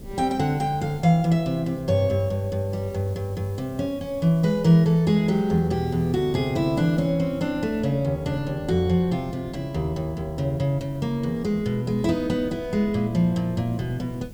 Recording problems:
background hiss; slope +1 dB per octave, SNR 30 dB
wind noise; below 230 Hz, SNR 19 dB

